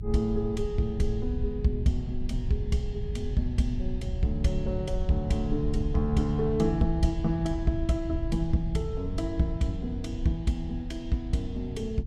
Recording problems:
rumble; below 86 Hz, SNR 5 dB

